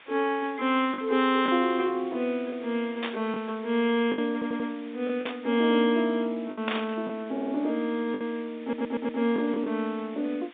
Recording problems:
telephone audio; 150 Hz to 3.7 kHz, G.711
hiss; SNR 22 dB
packet loss; 4% of the sound replaced, filled with the last packet
static burst; at 3 s, at 5 s and at 6.5 s; peak 0 dB vs average level
stutter; at 4.5 s, at 7.5 s and at 8.5 s

